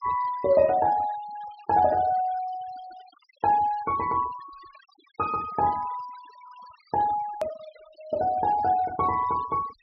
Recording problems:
treble cut off; nothing above 5.5 kHz
denoising artefacts; signal-to-artefact ratio 22 dB
hard cut with a click; at 7.5 s

